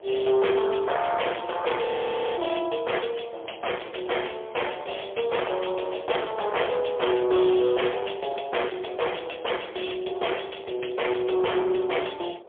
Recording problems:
telephone audio; 320 Hz to 3.4 kHz, AMR-NB, then MP3
distortion; hard clipping, signal-to-distortion ratio 8 dB
wind noise; below 1.1 kHz, SNR 19 dB
audio freezing; at 2 s for 0.5 s

